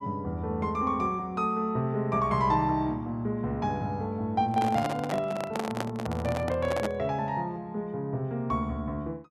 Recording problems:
handling noise; from 4.5 to 7 s; peak +1 dB vs average level

